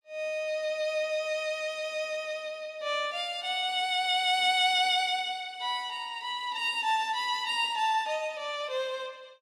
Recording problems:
none

